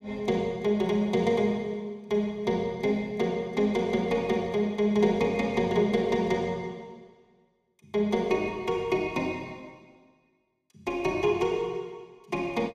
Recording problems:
none

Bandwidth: 14.5 kHz